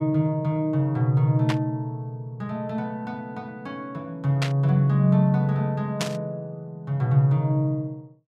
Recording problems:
static burst; at 1.5 s, at 4.5 s and at 6 s; peak 0 dB vs average level

